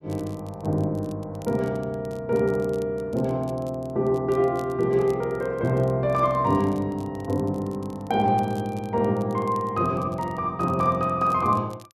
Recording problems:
crackling; vinyl, SNR 28 dB

